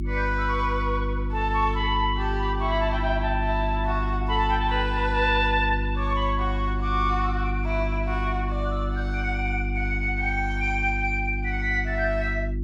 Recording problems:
hum; 50 Hz, harmonics up to 350 Hz, SNR 2 dB

